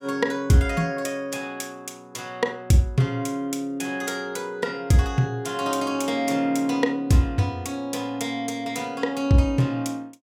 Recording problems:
none

